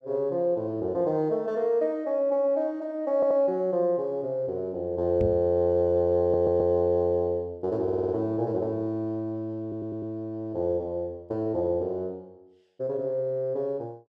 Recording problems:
stutter; 4 times, first at 3 s
microphone thump; at 5 s; peak -1 dB vs average level

